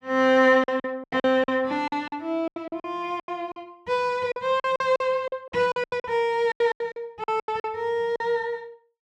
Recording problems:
packet loss; 16% of the sound replaced, filled with silence

